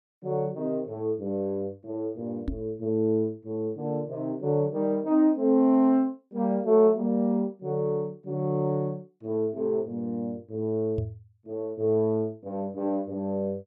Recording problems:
microphone thump; at 2.5 s and at 11 s; peak 0 dB vs average level

